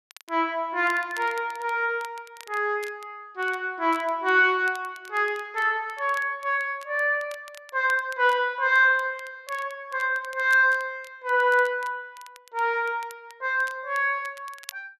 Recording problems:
crackling; vinyl, SNR 24 dB

